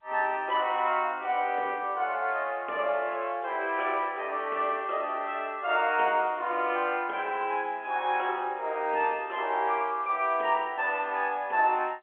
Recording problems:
telephone audio; 300 Hz to 3.3 kHz, G.711

